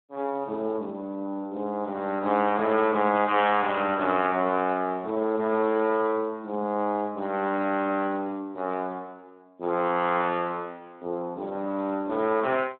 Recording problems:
telephone audio; 130 Hz to 3.6 kHz, Speex

